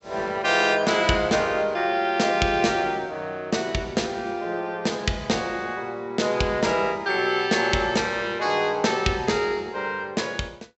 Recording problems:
low-pass filter; nothing above 7.8 kHz

